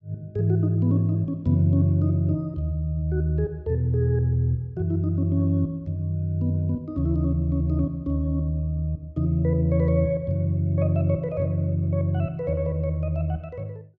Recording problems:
none

